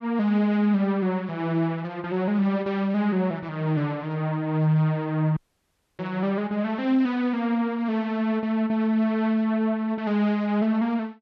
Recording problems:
dropout; at 5.5 s for 0.5 s

